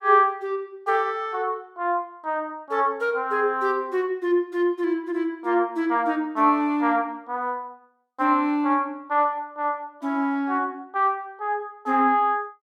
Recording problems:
none

